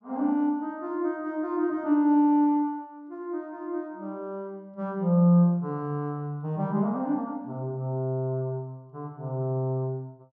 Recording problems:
none

